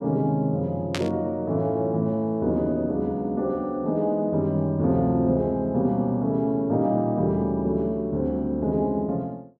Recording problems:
burst of static; at 1 s; peak -1 dB vs average level

